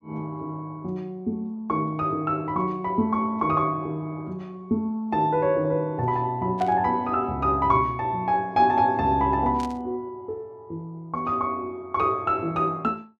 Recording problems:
burst of static; at 6.5 s and at 9.5 s; peak -11 dB vs average level

